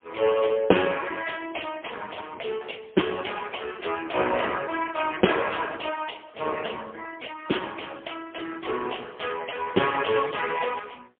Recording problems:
phone line; 300 Hz to 3.3 kHz, AMR-NB, then MP3

